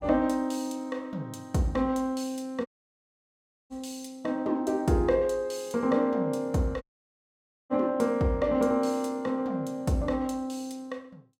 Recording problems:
dropout; at 2.5 s for 1 s and at 7 s for 1 s

